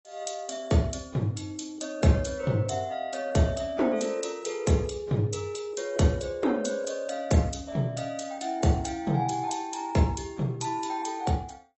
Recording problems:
lossy compression; AAC, log-spectral distance 6 dB, nothing above 7.8 kHz

